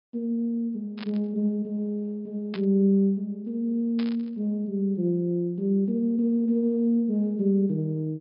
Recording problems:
low-pass filter; nothing above 5.5 kHz
static burst; at 1 s, at 2.5 s and at 4 s; peak -9 dB vs average level

